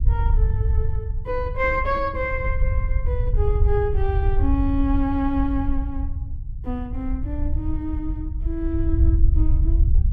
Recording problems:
low-frequency rumble; below 72 Hz, SNR -3 dB

